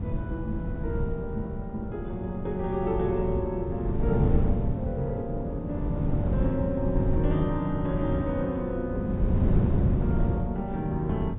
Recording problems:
treble missing; nothing above 4 kHz
wind noise; below 180 Hz, SNR -1 dB

